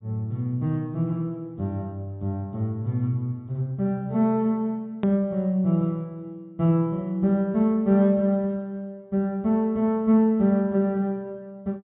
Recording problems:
treble cut off; nothing above 4 kHz
edit click; at 5 s

